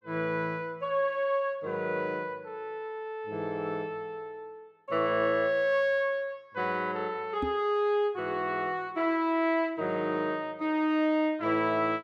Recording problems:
microphone bump; at 7.5 s; peak -1 dB vs average level

